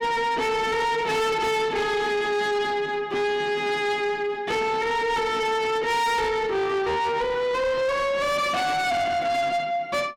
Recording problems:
distorted audio; soft clipping, signal-to-distortion ratio 7 dB

